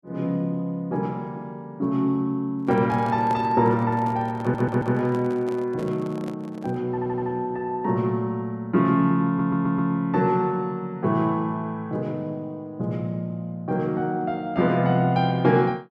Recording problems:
handling noise; from 2.5 to 7 s; peak -6 dB vs average level
stutter; at 4.5 s, at 7 s and at 9.5 s

